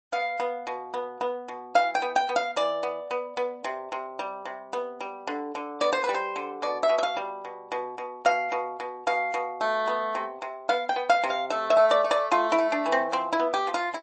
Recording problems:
lossy compression; MP3, log-spectral distance 2 dB, nothing above 8.2 kHz

